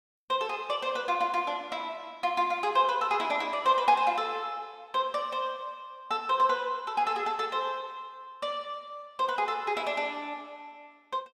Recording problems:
none

